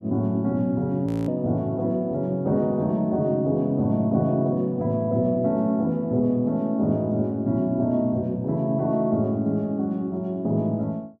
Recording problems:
audio freezing; at 1 s

